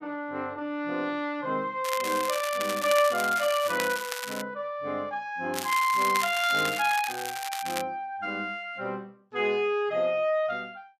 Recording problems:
crackle; from 2 to 4.5 s and from 5.5 to 8 s; loose cable, SNR 7 dB

